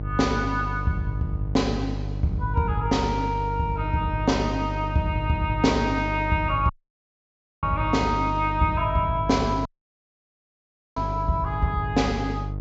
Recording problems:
treble missing; nothing above 7.4 kHz
hum; 50 Hz, harmonics up to 600 Hz, SNR 6 dB
audio cutting out; at 6.5 s for 1 s and at 9.5 s for 1.5 s

